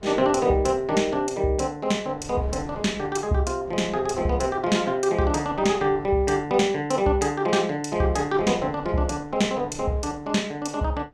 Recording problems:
wind noise; below 460 Hz, SNR 20 dB

